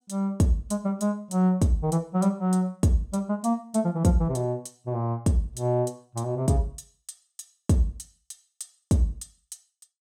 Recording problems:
none

